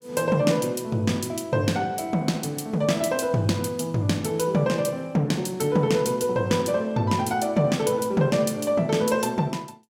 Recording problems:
none

